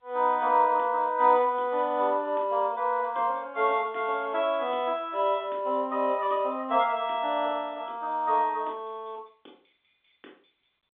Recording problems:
phone line; 220 Hz to 3.7 kHz, G.711

